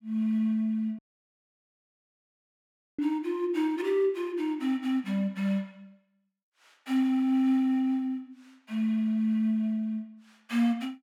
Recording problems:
dropout; at 1 s for 2 s

